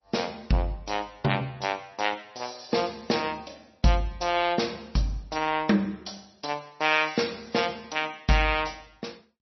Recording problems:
lossy codec; MP3, log-spectral distance 8 dB, nothing above 5.8 kHz

